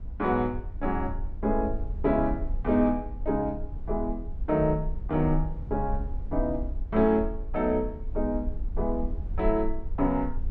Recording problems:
low-frequency rumble; below 56 Hz, SNR 7 dB

